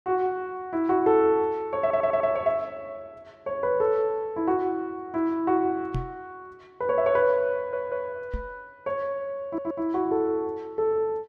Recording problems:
stutter; at 2 s, at 7.5 s and at 9.5 s
microphone bump; at 6 s and at 8.5 s; peak -1 dB vs average level

